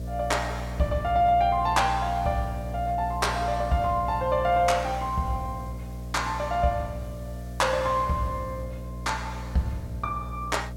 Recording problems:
electrical hum; 60 Hz, harmonics up to 660 Hz, SNR 9 dB
hiss; SNR 28 dB

